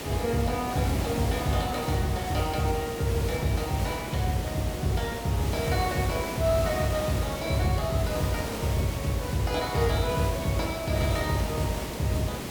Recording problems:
hiss; slope -5 dB per octave, SNR 6 dB

